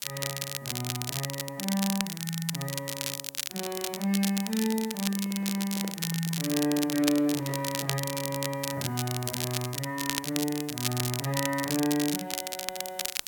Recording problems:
background hiss; slope -2 dB per octave, SNR 23 dB
crackle; vinyl, SNR 2 dB
microphone handling noise; from 5 to 8 s; peak -6 dB vs average level

